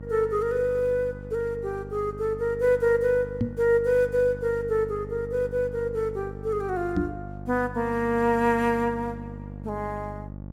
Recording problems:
mains hum; 50 Hz, harmonics up to 850 Hz, SNR 13 dB
microphone thump; at 3.5 s and at 7 s; peak +4 dB vs average level

